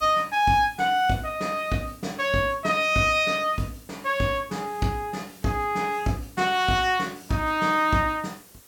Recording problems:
background hiss; SNR 25 dB

